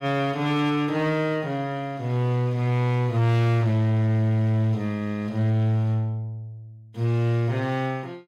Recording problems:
distortion; hard clipping, signal-to-distortion ratio 11 dB

